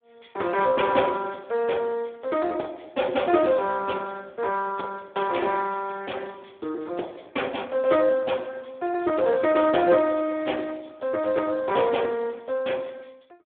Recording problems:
telephone audio; 280 Hz to 3.4 kHz, Speex

